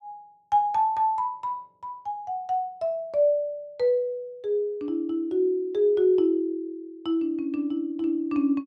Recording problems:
none

